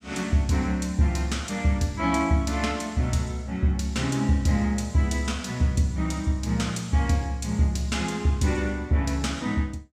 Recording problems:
none

